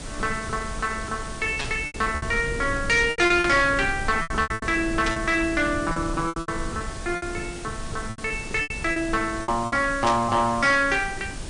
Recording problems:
codec artefacts; MP3, log-spectral distance 9 dB, nothing above 8.7 kHz
distorted audio; soft clipping, signal-to-distortion ratio 12 dB
hiss; slope -1 dB per octave, SNR 16 dB
rumble; below 220 Hz, SNR 12 dB
lost packets; 11% of the sound replaced, filled with repeated pitch periods
burst of static; 4 times, first at 1.5 s; peak -1 dB vs average level

